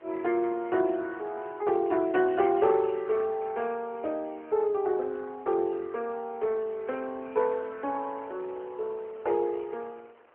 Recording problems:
phone line; 280 Hz to 3.2 kHz, AMR-NB
wind on the microphone; below 1.6 kHz, SNR 25 dB

